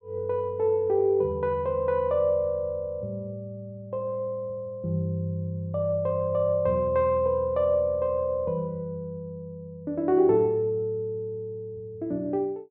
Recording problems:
none

